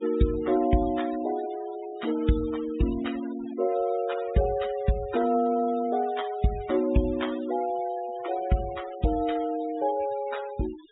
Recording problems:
treble cut off; nothing above 3.8 kHz
noise reduction artefacts; signal-to-artefact ratio 17 dB

